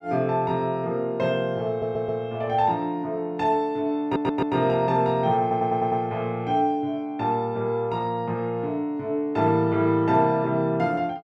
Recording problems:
stutter; at 1.5 s, at 4 s and at 5.5 s

